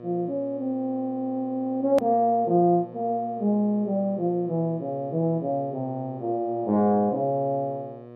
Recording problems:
hum; 60 Hz, harmonics up to 1.8 kHz, SNR 18 dB
edit click; at 2 s

